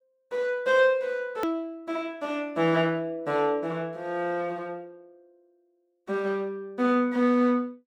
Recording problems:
hard cut with a click; at 1.5 s

